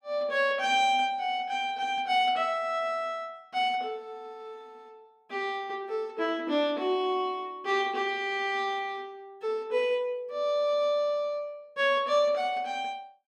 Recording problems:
none

